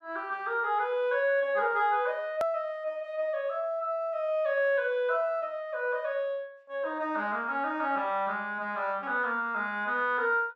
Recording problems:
hard cut with a click; at 2.5 s

